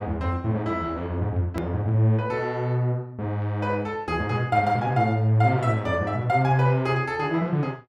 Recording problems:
click at an edit; at 1.5 s

